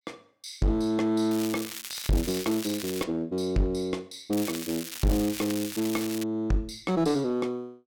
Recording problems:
distorted audio; hard clipping, uneven, signal-to-distortion ratio 7 dB
crackling; from 1.5 to 3 s and from 4.5 to 6 s; loose cable, SNR 8 dB

